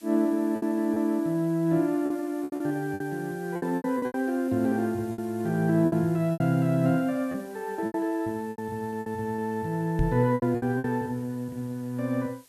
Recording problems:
background hiss; slope +1 dB per octave, SNR 26 dB
lost packets; 10% of the sound replaced, filled with repeated pitch periods
knock on the microphone; at 10 s; peak +4 dB vs average level

